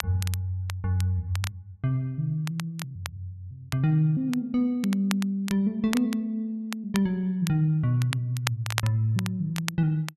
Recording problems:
crackling; vinyl, SNR 11 dB

